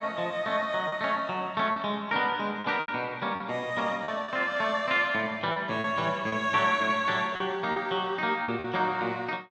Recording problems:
packet loss; 6% of the sound replaced, filled with repeated pitch periods

